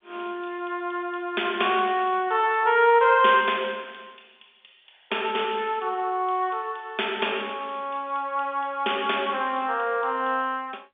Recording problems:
phone line; 300 Hz to 3.5 kHz, G.711

